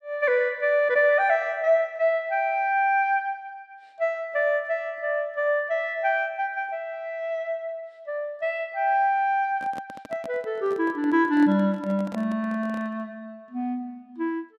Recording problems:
microphone handling noise; from 9.5 to 13 s; peak -8 dB vs average level

